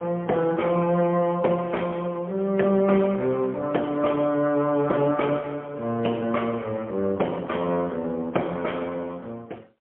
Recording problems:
telephone audio; 220 Hz to 3.3 kHz, AMR-NB, then MP3

